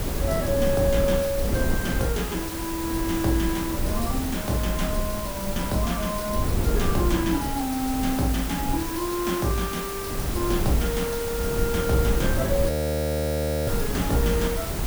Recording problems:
background hiss; slope -3 dB per octave, SNR 6 dB
wind on the microphone; below 220 Hz, SNR 3 dB
frozen audio; at 13 s for 1 s

